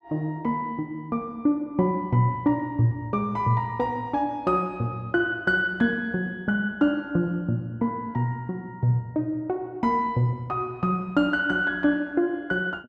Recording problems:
none

